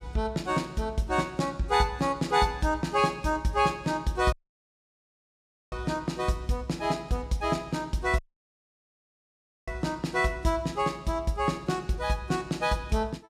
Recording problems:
dropout; at 4.5 s for 1.5 s and at 8 s for 1.5 s

